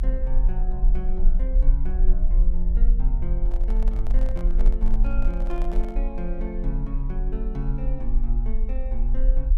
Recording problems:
low-frequency rumble; below 36 Hz, SNR -9 dB
handling noise; from 3.5 to 6 s; peak -4 dB vs average level

